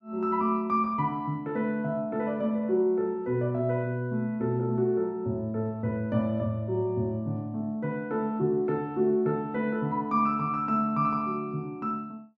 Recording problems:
none

